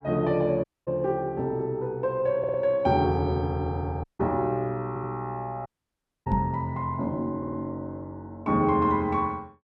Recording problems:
dropout; at 0.5 s, at 4 s and at 5.5 s for 0.5 s
stutter; at 2.5 s, at 5 s and at 7.5 s
knock on the microphone; at 6.5 s; peak +3 dB vs average level

